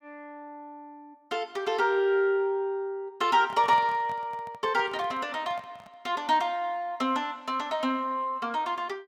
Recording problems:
handling noise; from 3.5 to 6 s; peak -10 dB vs average level

